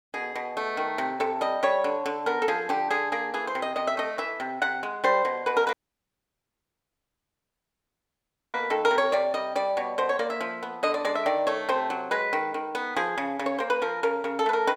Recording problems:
dropout; at 5.5 s for 3 s

